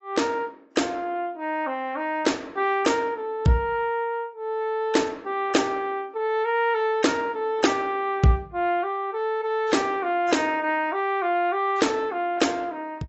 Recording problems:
lossy codec; AAC, log-spectral distance 2 dB, nothing above 7.8 kHz

